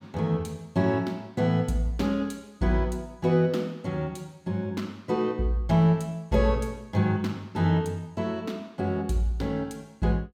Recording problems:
none

